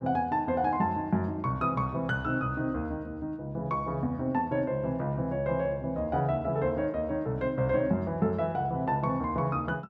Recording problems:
none

